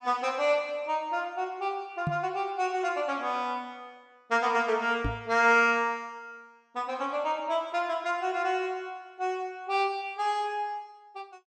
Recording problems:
knock on the microphone; at 2 s and at 5 s; peak +1 dB vs average level

